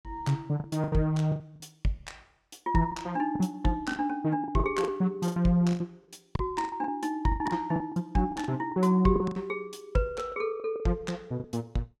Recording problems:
lost packets; 13% of the sound replaced, filled with the last packet

